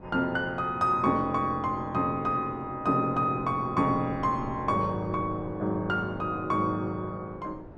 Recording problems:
wind on the microphone; below 460 Hz, SNR 18 dB

